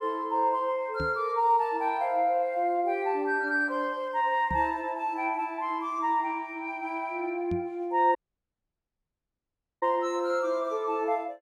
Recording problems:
knock on the microphone; at 1 s, at 4.5 s and at 7.5 s; peak -4 dB vs average level
audio cutting out; at 8 s for 1.5 s

